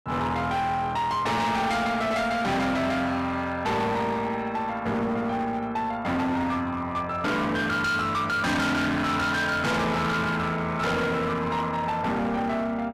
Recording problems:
distortion; hard clipping, signal-to-distortion ratio 6 dB

